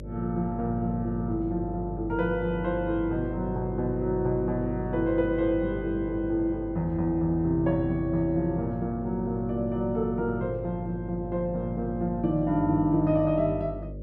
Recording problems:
hum; 50 Hz, harmonics up to 600 Hz, SNR 10 dB

